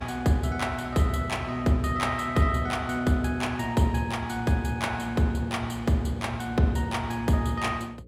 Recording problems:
electrical hum; 60 Hz, harmonics up to 540 Hz, SNR 23 dB

